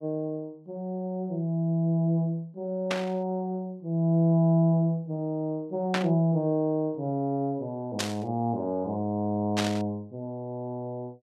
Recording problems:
burst of static; 4 times, first at 3 s; peak +3 dB vs average level

